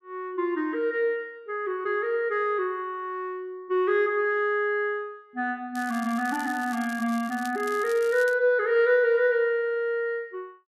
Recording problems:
crackle; from 6 to 8.5 s; loose cable, SNR 19 dB

